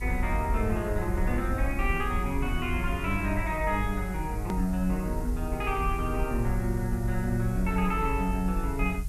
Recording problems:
background hiss; slope 0 dB per octave, SNR 20 dB
low-frequency rumble; below 62 Hz, SNR 4 dB
hard cut with a click; at 4.5 s

